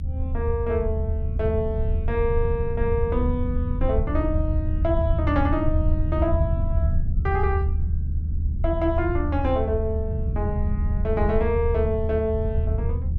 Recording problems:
low-frequency rumble; below 82 Hz, SNR -1 dB

